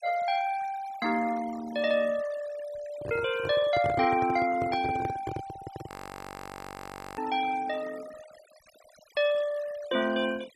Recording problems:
denoising artefacts; signal-to-artefact ratio 17 dB
microphone handling noise; from 3 to 6 s; peak -3 dB vs average level
frozen audio; at 6 s for 1.5 s

